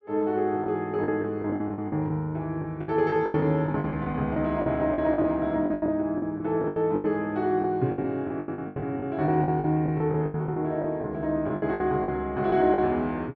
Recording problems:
packet loss; 16% of the sound replaced, filled with the last packet

